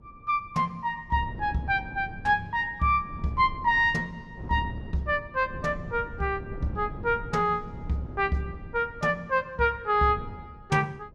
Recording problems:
wind noise; below 200 Hz, SNR 14 dB

